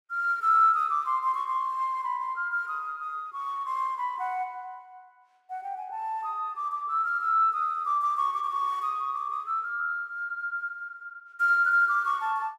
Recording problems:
none

